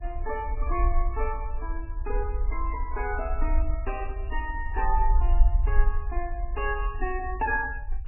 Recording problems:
lossy codec; MP3, log-spectral distance 2 dB, nothing above 2.7 kHz
low-frequency rumble; below 50 Hz, SNR -2 dB

